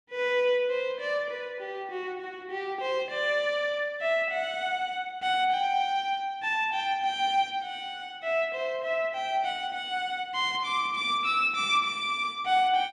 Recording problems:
none

